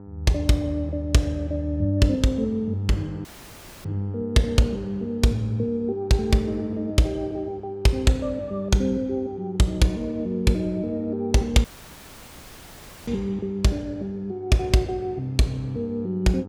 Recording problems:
hum; 50 Hz, harmonics up to 1.3 kHz, SNR 15 dB
audio cutting out; at 3.5 s for 0.5 s and at 12 s for 1.5 s

